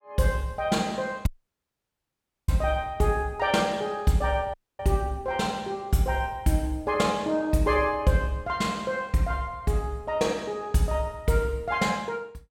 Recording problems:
dropout; at 1.5 s for 1 s and at 4.5 s

